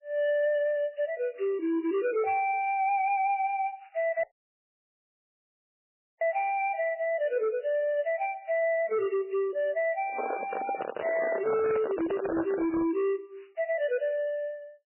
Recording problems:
codec artefacts; MP3, log-spectral distance 2 dB, nothing above 2.4 kHz
distorted audio; hard clipping, signal-to-distortion ratio 11 dB
dropout; at 4 s for 2 s
microphone handling noise; from 10 to 13 s; peak 0 dB vs average level

